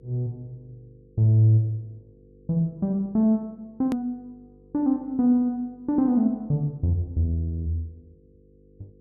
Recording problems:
hum; 50 Hz, harmonics up to 500 Hz, SNR 30 dB
edit click; at 4 s

